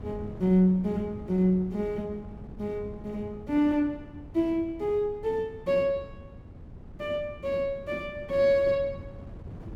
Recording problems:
wind noise; below 220 Hz, SNR 17 dB

